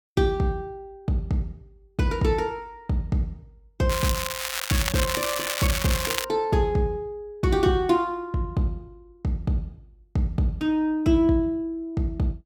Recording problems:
crackling; from 4 to 6 s; loose cable, SNR 2 dB

